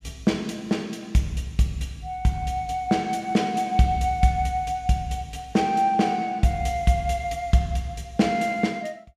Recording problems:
none

